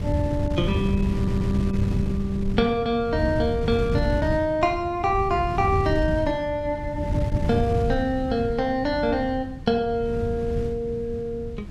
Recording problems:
wind on the microphone; below 150 Hz, SNR 4 dB
stutter; at 1 s

